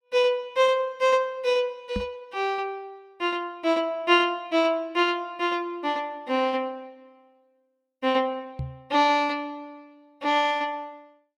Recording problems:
microphone thump; at 2 s and at 8.5 s; peak -2 dB vs average level

